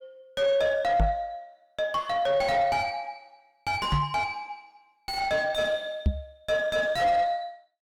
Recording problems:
distorted audio; soft clipping, signal-to-distortion ratio 7 dB
knock on the microphone; at 1 s, at 4 s and at 6 s; peak +6 dB vs average level

